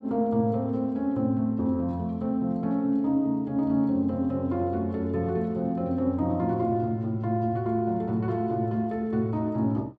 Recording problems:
none

